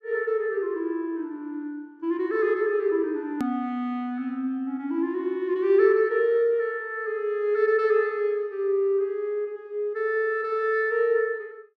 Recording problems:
click at an edit; at 3.5 s

